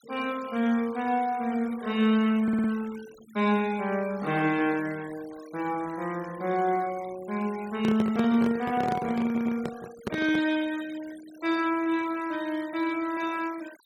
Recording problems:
denoising artefacts; signal-to-artefact ratio 20 dB
audio stuttering; at 2.5 s and at 9 s
microphone handling noise; from 8 to 10 s; peak 0 dB vs average level

